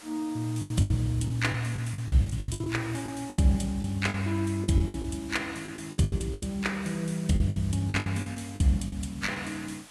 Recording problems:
codec artefacts; AAC, log-spectral distance 5 dB
hiss; slope -1 dB per octave, SNR 21 dB
lost packets; 15% of the sound replaced, filled with the last packet

